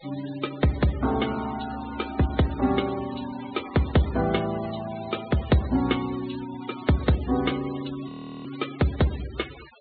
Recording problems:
treble cut off; nothing above 4.3 kHz
denoising artefacts; signal-to-artefact ratio 15 dB
audio freezing; at 8 s

